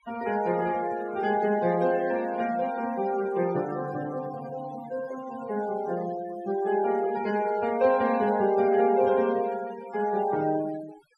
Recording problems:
denoising artefacts; signal-to-artefact ratio 17 dB

